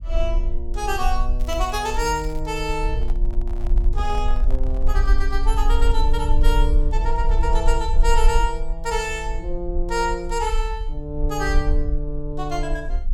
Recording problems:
rumble; below 42 Hz, strongest tone 22 Hz, SNR -1 dB
crackle; from 1.5 to 2.5 s; loose cable, SNR 22 dB
handling noise; from 3 to 5 s; peak -11 dB vs average level

